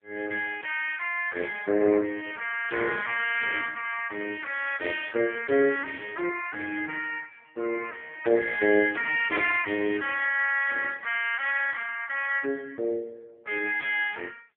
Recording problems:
phone line; 320 Hz to 3.3 kHz, AMR-NB

